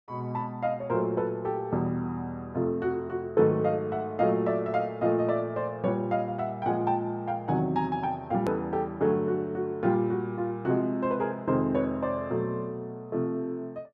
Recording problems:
edit click; at 8.5 s

